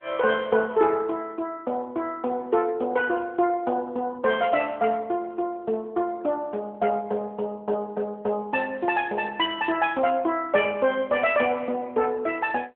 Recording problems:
phone line; 300 Hz to 3.5 kHz, AMR-NB

